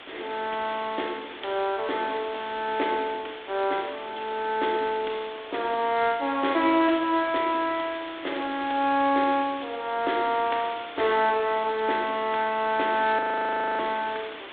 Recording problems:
telephone audio; 240 Hz to 3.8 kHz, G.726
hiss; SNR 14 dB
audio freezing; at 13 s for 0.5 s

